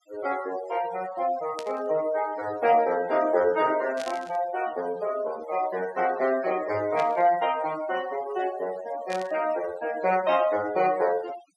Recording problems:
noise reduction artefacts; signal-to-artefact ratio 17 dB
static burst; 4 times, first at 1.5 s; peak -8 dB vs average level

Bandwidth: 12 kHz